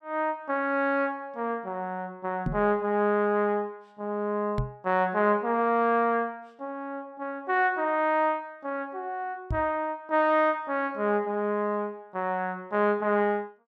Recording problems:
microphone thump; at 2.5 s, at 4.5 s and at 9.5 s; peak +1 dB vs average level

